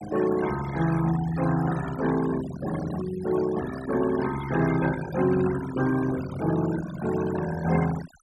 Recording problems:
denoising artefacts; signal-to-artefact ratio 12 dB

